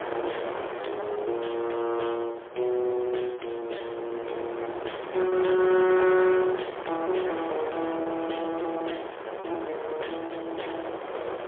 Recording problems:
phone line; 300 Hz to 3.4 kHz, AMR-NB, then MP3
distorted audio; hard clipping, uneven, signal-to-distortion ratio 13 dB
wind on the microphone; below 1.1 kHz, SNR 8 dB
packet loss; 9% of the sound replaced, filled with repeated pitch periods

